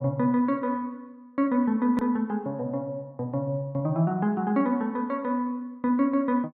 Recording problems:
click at an edit; at 2 s

